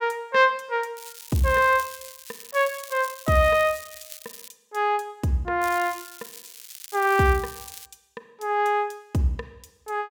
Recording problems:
crackle; from 1 to 4.5 s and from 5.5 to 8 s; loose cable, SNR 16 dB

